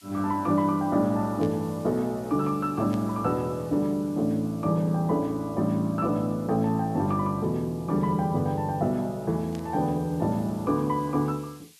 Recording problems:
background hiss; slope +5 dB per octave, SNR 26 dB
burst of static; at 1.5 s, at 3 s and at 9.5 s; peak -14 dB vs average level

